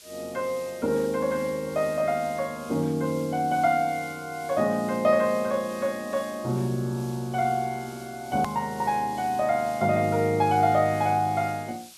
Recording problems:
background hiss; SNR 20 dB
edit click; at 8.5 s

